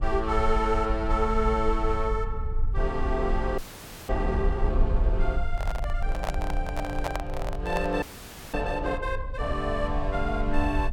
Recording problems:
low-frequency rumble; below 54 Hz, SNR 2 dB
audio freezing; at 3.5 s for 0.5 s and at 8 s for 0.5 s
handling noise; from 5.5 to 8.5 s; peak +3 dB vs average level

